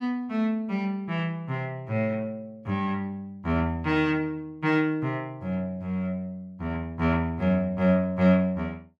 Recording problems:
none

